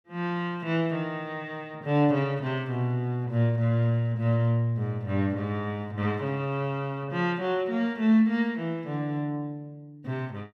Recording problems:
none

